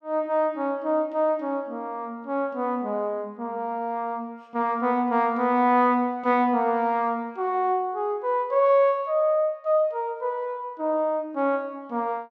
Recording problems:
none

